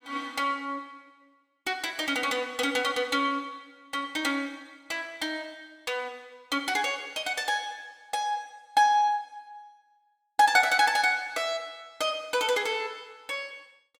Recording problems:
none

